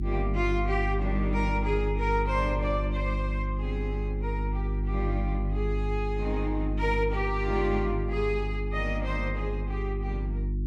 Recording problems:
mains hum; 50 Hz, harmonics up to 350 Hz, SNR 0 dB

